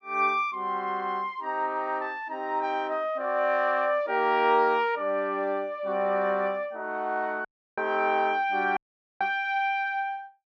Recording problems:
audio cutting out; at 7.5 s and at 9 s

